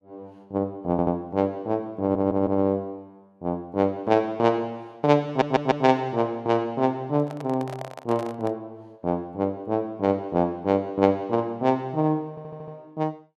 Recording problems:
stutter; 4 times, first at 1 s
handling noise; from 7 to 8.5 s; peak -7 dB vs average level

